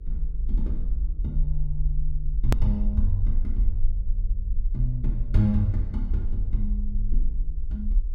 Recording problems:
hum; 50 Hz, harmonics up to 500 Hz, SNR 28 dB
low-frequency rumble; below 48 Hz, SNR -1 dB
hard cut with a click; at 2.5 s

